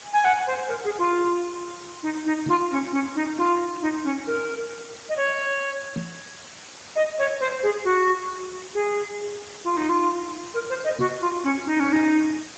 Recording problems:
codec artefacts; Speex, log-spectral distance 15 dB
hiss; slope -1 dB per octave, SNR 16 dB
microphone thump; at 2.5 s, at 6 s and at 11 s; peak -2 dB vs average level

